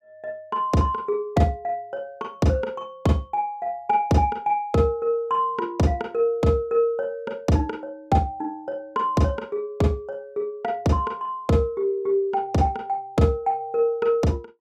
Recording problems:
none

